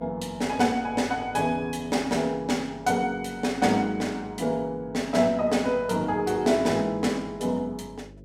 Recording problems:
hum; 50 Hz, harmonics up to 550 Hz, SNR 22 dB

